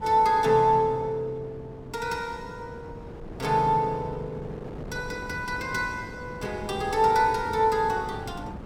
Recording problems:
wind on the microphone; below 460 Hz, SNR 15 dB

